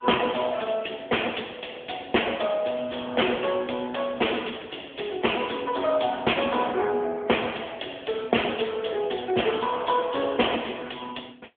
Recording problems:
phone line; 260 Hz to 3.4 kHz, AMR-NB

